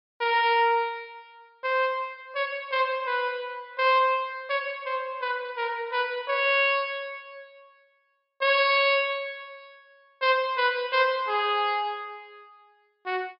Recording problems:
treble cut off; nothing above 5.5 kHz

